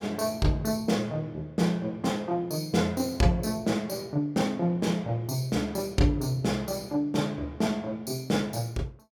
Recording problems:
none

